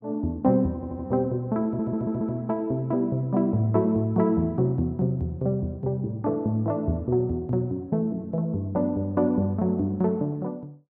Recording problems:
audio stuttering; at 1 s and at 1.5 s

